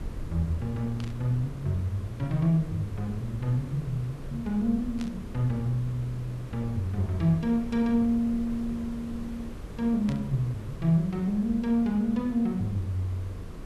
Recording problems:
hiss; SNR 16 dB
rumble; below 98 Hz, SNR 16 dB
burst of static; at 1 s, at 5 s and at 10 s; peak -11 dB vs average level

